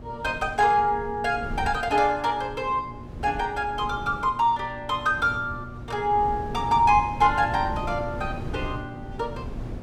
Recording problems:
hum; 60 Hz, harmonics up to 960 Hz, SNR 19 dB
wind on the microphone; below 230 Hz, SNR 13 dB

